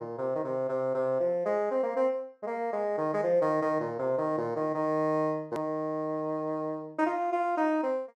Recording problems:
hard cut with a click; at 5.5 s

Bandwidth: 12.5 kHz